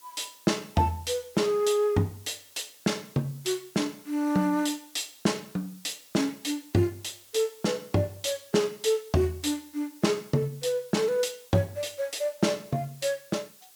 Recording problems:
hiss; slope +1 dB per octave, SNR 23 dB

